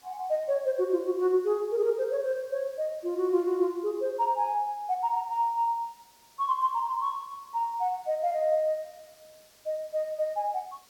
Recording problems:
hiss; slope -1 dB per octave, SNR 28 dB

